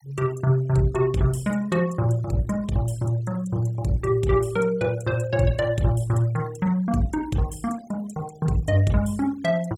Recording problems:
noise reduction artefacts; signal-to-artefact ratio 24 dB

